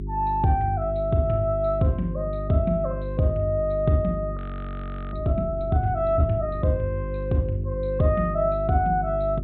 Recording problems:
treble missing; nothing above 4 kHz
electrical hum; 50 Hz, harmonics up to 400 Hz, SNR 8 dB
audio freezing; at 4.5 s for 1 s

